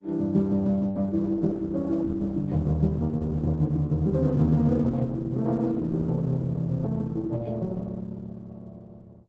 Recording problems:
codec artefacts; Opus, log-spectral distance 2 dB, nothing above 7.6 kHz

